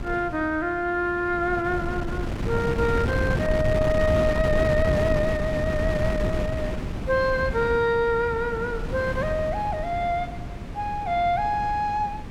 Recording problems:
wind noise; below 290 Hz, SNR 4 dB

